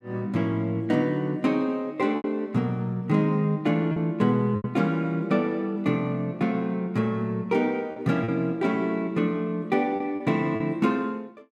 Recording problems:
lost packets; 4% of the sound replaced, filled with repeated pitch periods

